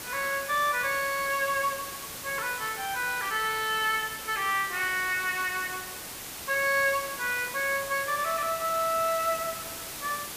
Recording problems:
hiss; slope -1 dB per octave, SNR 9 dB

